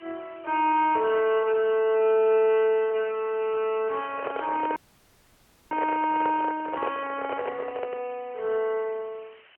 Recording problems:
telephone audio; 340 Hz to 3.3 kHz, AMR-NB
hiss; SNR 27 dB
handling noise; from 4 to 8 s; peak -2 dB vs average level
audio freezing; at 5 s for 1 s

